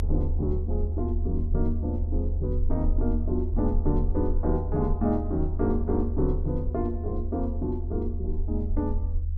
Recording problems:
rumble; below 78 Hz, SNR 0 dB

